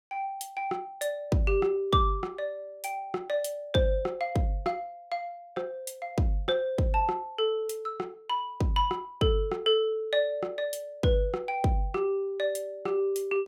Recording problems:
none

